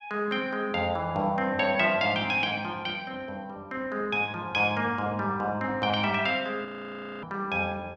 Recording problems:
frozen audio; at 6.5 s for 0.5 s

